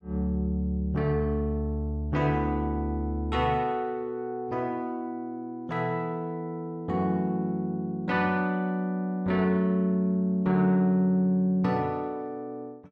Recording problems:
none

